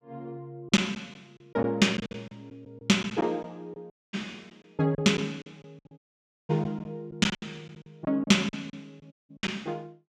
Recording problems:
packet loss; 12% of the sound replaced, filled with silence
audio cutting out; at 4 s, at 6 s for 0.5 s and at 9 s

